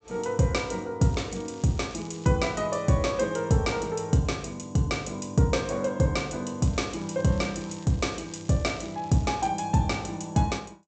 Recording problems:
treble cut off; nothing above 8 kHz
crackling; from 1 to 2.5 s and from 6.5 to 9.5 s; loose cable, SNR 24 dB

